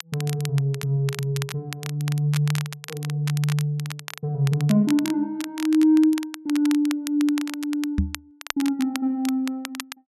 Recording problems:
crackling; vinyl, SNR 13 dB
microphone thump; at 8 s; peak +5 dB vs average level

